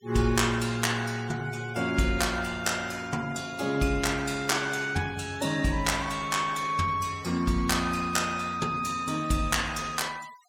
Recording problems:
noise reduction artefacts; signal-to-artefact ratio 20 dB

